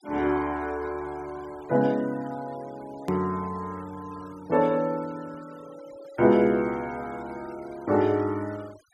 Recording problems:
denoising artefacts; signal-to-artefact ratio 24 dB
hard cut with a click; at 3 s

